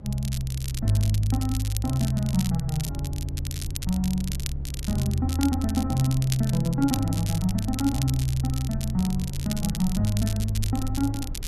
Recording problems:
mains hum; 60 Hz, harmonics up to 540 Hz, SNR 27 dB
low-frequency rumble; below 70 Hz, SNR 14 dB
crackling; vinyl, SNR 11 dB

